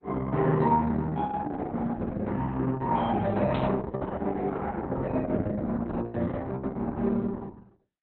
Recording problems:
codec artefacts; Opus, log-spectral distance 3 dB
burst of static; at 3.5 s; peak -9 dB vs average level

